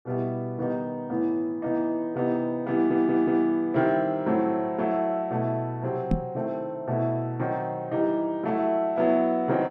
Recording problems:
stutter; at 2.5 s
microphone thump; at 6 s; peak +5 dB vs average level

